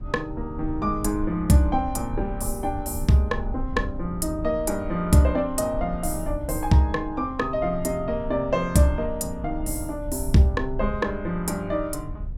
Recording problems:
low-frequency rumble; below 74 Hz, SNR 11 dB

